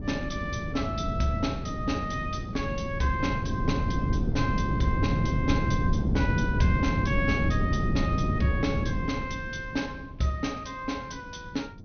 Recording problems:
treble cut off; nothing above 6.3 kHz
lossy compression; G.722, log-spectral distance 2 dB
wind noise; below 210 Hz, SNR -1 dB

